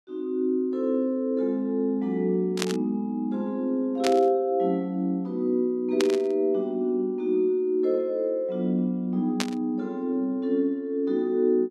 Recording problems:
static burst; 4 times, first at 2.5 s; peak +2 dB vs average level

